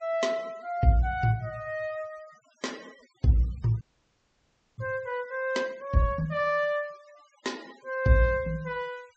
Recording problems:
low-pass filter; nothing above 8 kHz
noise reduction artefacts; signal-to-artefact ratio 25 dB
audio freezing; at 4 s for 1 s

